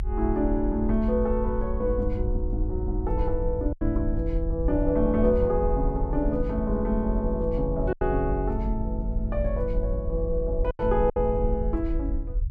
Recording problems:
rumble; below 56 Hz, SNR 4 dB
lost packets; 2% of the sound replaced, filled with silence

